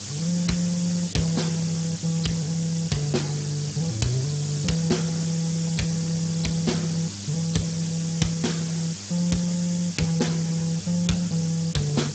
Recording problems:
lossy compression; Speex, log-spectral distance 16 dB, nothing above 7.6 kHz
electrical hum; 50 Hz, harmonics up to 500 Hz, SNR 14 dB
hiss; SNR 9 dB

